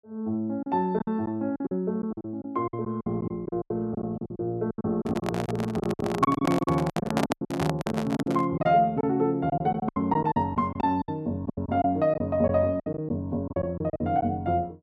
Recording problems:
packet loss; 15% of the sound replaced, filled with silence
handling noise; from 5 to 8.5 s; peak +3 dB vs average level

